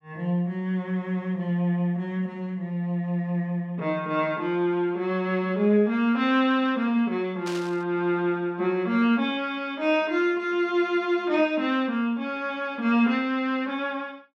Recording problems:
static burst; at 7.5 s; peak -8 dB vs average level

